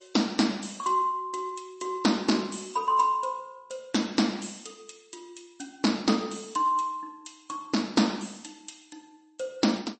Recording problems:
lossy compression; MP3, log-spectral distance 6 dB, nothing above 8.2 kHz

